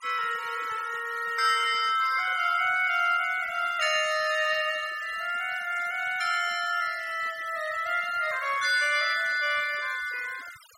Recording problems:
noise reduction artefacts; signal-to-artefact ratio 19 dB

